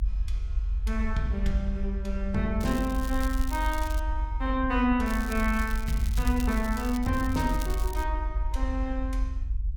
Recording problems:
low-frequency rumble; below 56 Hz, strongest tone 46 Hz, SNR 2 dB
crackle; from 2.5 to 4 s and from 5 to 8 s; loose cable, SNR 14 dB

